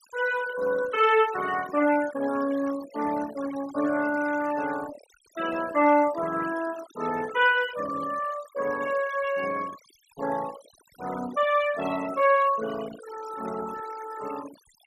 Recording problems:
noise reduction artefacts; signal-to-artefact ratio 16 dB

